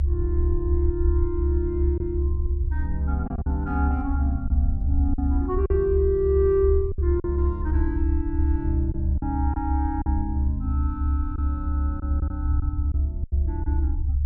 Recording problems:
rumble; below 74 Hz, strongest tone 70 Hz, SNR -3 dB
lost packets; 5% of the sound replaced, filled with silence

